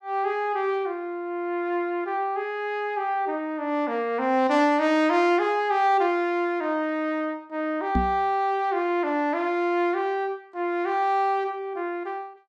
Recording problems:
knock on the microphone; at 8 s; peak +3 dB vs average level

